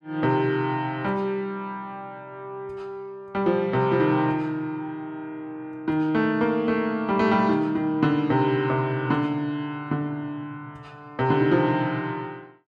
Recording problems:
none

